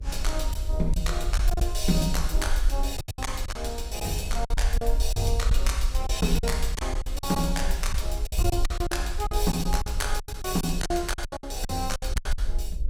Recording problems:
electrical hum; 50 Hz, harmonics up to 600 Hz, SNR 20 dB
rumble; below 54 Hz, SNR 1 dB
lost packets; 12% of the sound replaced, filled with silence

